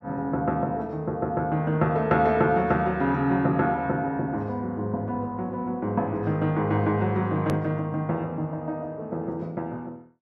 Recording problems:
edit click; at 7.5 s

